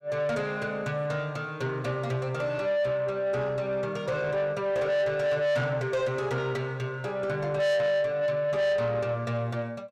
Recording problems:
distortion; soft clipping, signal-to-distortion ratio 7 dB

